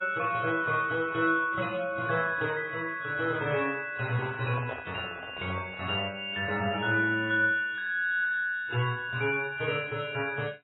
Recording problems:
lossy compression; MP3, then AAC, log-spectral distance 3 dB, nothing above 3.8 kHz
microphone handling noise; from 4 to 6 s; peak -5 dB vs average level

